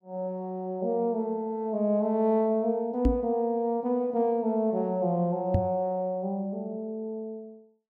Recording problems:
microphone bump; at 3 s and at 5.5 s; peak +6 dB vs average level

